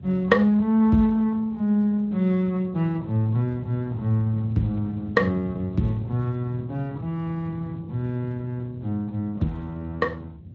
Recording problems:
lossy codec; Opus, then Speex, log-spectral distance 2 dB, nothing above 16 kHz
wind noise; below 180 Hz, SNR 14 dB

